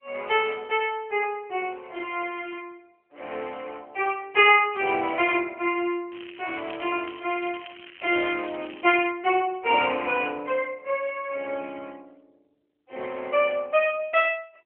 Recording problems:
phone line; 280 Hz to 3.2 kHz, AMR-NB
crackle; from 6 to 9 s; loose cable, SNR 19 dB

